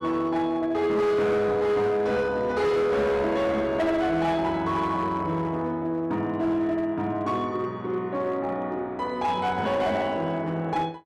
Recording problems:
distorted audio; hard clipping, signal-to-distortion ratio 11 dB

